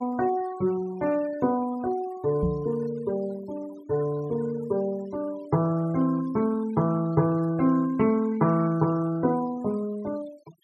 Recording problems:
noise reduction artefacts; signal-to-artefact ratio 23 dB
knock on the microphone; at 2.5 s; peak +3 dB vs average level

